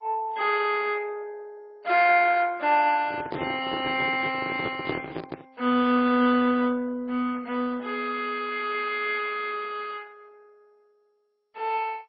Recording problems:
codec artefacts; MP3, then MP2, log-spectral distance 4 dB, nothing above 4.8 kHz
handling noise; from 3 to 5.5 s; peak -1 dB vs average level

